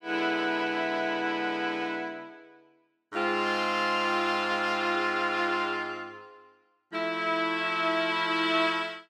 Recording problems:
none

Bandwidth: 17 kHz